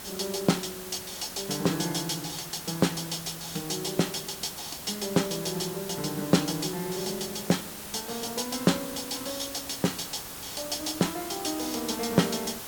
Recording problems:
background hiss; slope -2 dB per octave, SNR 8 dB

